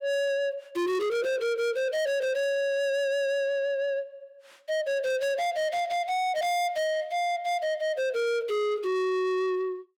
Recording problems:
distortion; soft clipping, signal-to-distortion ratio 8 dB

